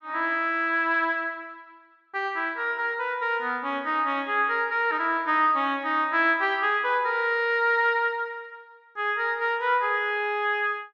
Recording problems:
none

